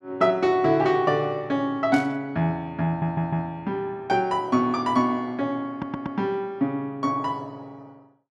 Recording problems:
static burst; at 2 s; peak -8 dB vs average level
audio stuttering; at 3 s and at 5.5 s

